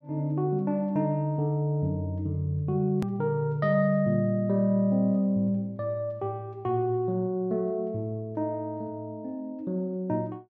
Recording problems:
edit click; at 3 s

